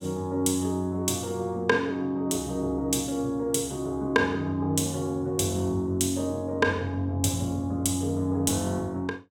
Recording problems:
none

